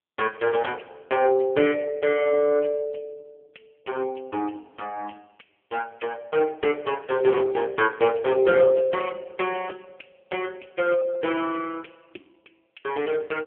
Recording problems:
phone line; 260 Hz to 2.6 kHz, AMR-NB

